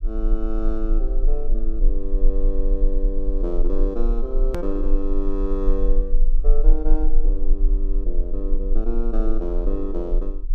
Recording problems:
rumble; below 32 Hz, strongest tone 18 Hz, SNR -5 dB
click at an edit; at 4.5 s

